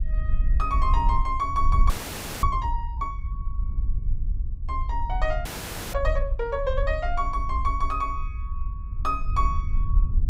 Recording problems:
rumble; below 58 Hz, SNR 0 dB
audio freezing; at 2 s for 0.5 s and at 5.5 s

